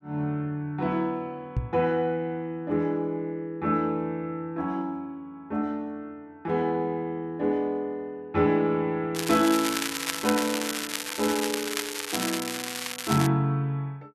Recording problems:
knock on the microphone; at 1.5 s; peak +4 dB vs average level
crackle; from 9 to 13 s; loose cable, SNR 3 dB

